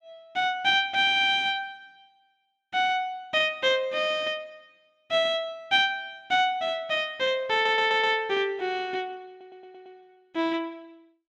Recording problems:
stutter; at 7.5 s and at 9.5 s

